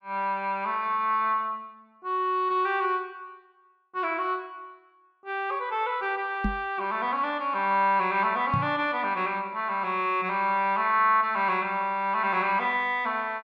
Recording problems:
microphone thump; at 6.5 s and at 8.5 s; peak +1 dB vs average level

